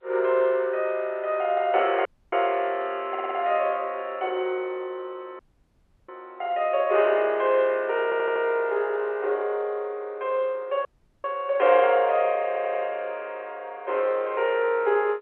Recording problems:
phone line; 320 Hz to 3.2 kHz, G.711
dropout; at 2 s, at 5.5 s for 0.5 s and at 11 s
audio stuttering; at 3 s, at 8 s and at 12 s

